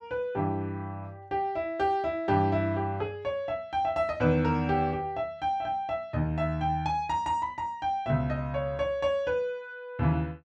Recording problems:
none

